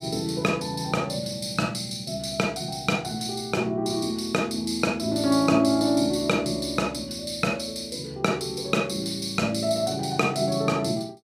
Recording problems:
none

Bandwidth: 15.5 kHz